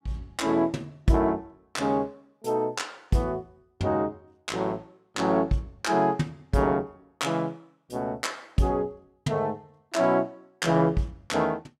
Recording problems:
none

